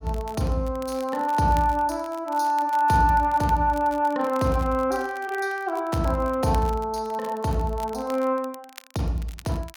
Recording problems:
crackling; vinyl, SNR 23 dB

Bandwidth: 17.5 kHz